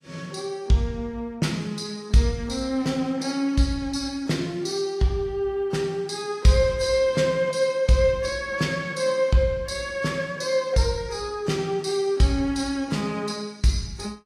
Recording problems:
codec artefacts; AAC, log-spectral distance 2 dB

